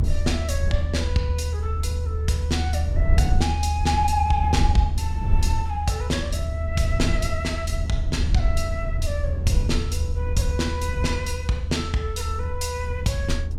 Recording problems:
rumble; below 80 Hz, SNR -1 dB

